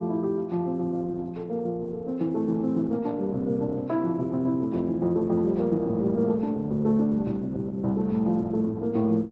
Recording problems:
lossy compression; Opus, log-spectral distance 2 dB

